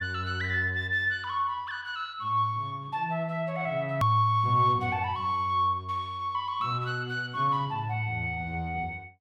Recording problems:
hard cut with a click; at 4 s

